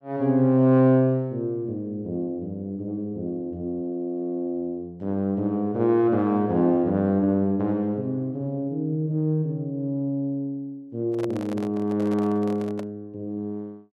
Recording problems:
microphone handling noise; from 11 to 13 s; peak -6 dB vs average level

